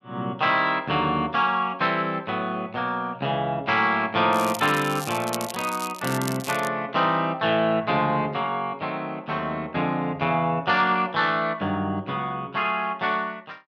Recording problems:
crackle; from 4.5 to 6.5 s; loose cable, SNR 12 dB

